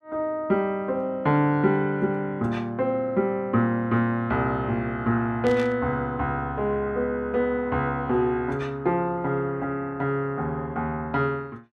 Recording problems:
burst of static; at 5.5 s; peak -10 dB vs average level

